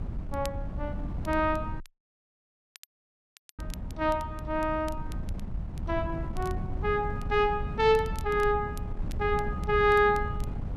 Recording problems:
wind noise; below 140 Hz, SNR 8 dB
crackle; vinyl, SNR 25 dB
audio cutting out; at 2 s for 2 s

